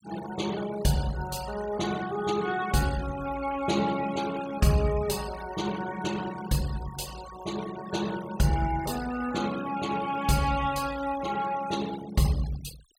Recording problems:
denoising artefacts; signal-to-artefact ratio 14 dB

